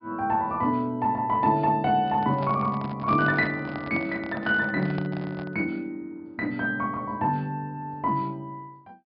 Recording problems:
treble missing; nothing above 5.5 kHz
handling noise; from 2 to 5.5 s; peak -6 dB vs average level

